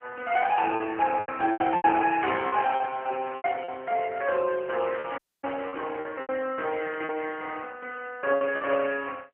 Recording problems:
phone line; 280 Hz to 3 kHz, AMR-NB
lost packets; 9% of the sound replaced, filled with repeated pitch periods
audio cutting out; at 5 s

